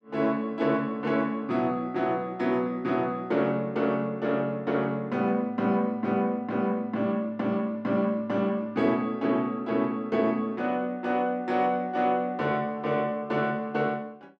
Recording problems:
none

